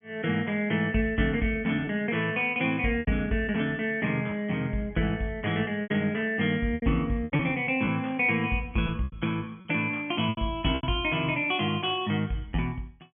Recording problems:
treble missing; nothing above 3.4 kHz
packet loss; 6% of the sound replaced, filled with repeated pitch periods

